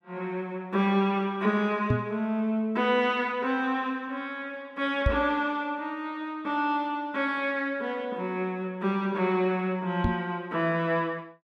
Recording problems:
knock on the microphone; at 2 s, at 5 s and at 10 s; peak +6 dB vs average level

